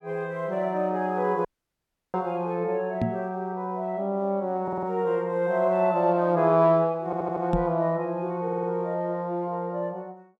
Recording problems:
audio cutting out; at 1.5 s for 0.5 s
microphone bump; at 3 s and at 7.5 s; peak +4 dB vs average level
audio stuttering; at 4.5 s, at 7 s and at 8.5 s

